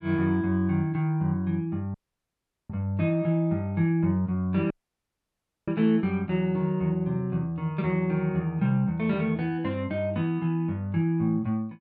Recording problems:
dropout; at 2 s for 1 s and at 4.5 s for 1 s

